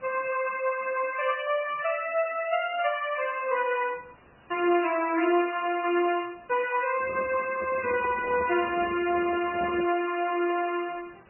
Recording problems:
lossy codec; MP2, then MP3, log-spectral distance 7 dB, nothing above 2.4 kHz
hiss; SNR 29 dB
microphone handling noise; from 7 to 10 s; peak -7 dB vs average level

